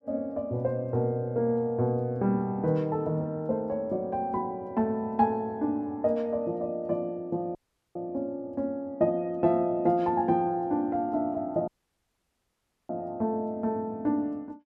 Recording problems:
dropout; at 7.5 s and at 12 s for 1 s

